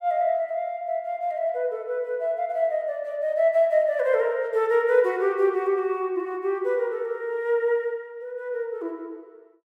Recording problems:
none

